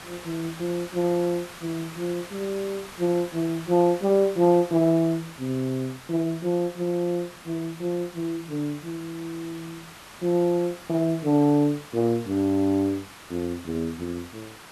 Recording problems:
background hiss; SNR 17 dB

